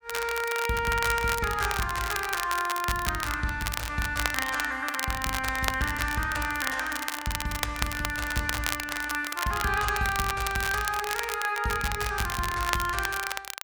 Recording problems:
crackling; vinyl, SNR 5 dB

